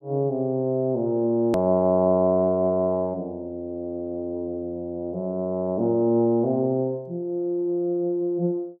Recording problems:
hard cut with a click; at 1.5 s

